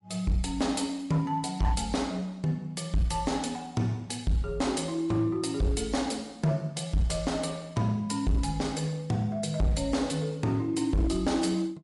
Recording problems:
lossy compression; MP3, log-spectral distance 2 dB, nothing above 11 kHz
distortion; hard clipping, signal-to-distortion ratio 11 dB

